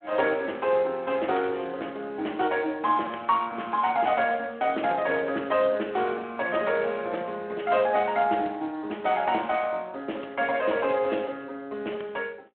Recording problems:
phone line; 240 Hz to 3.4 kHz, Speex

